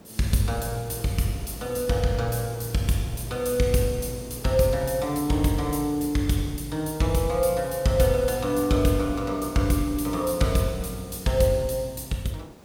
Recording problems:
hiss; SNR 19 dB

